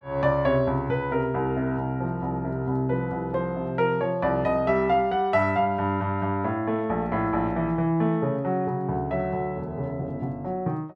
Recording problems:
none

